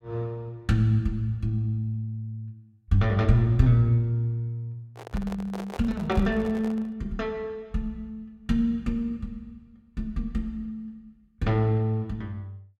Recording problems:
handling noise; from 5 to 7 s; peak -7 dB vs average level

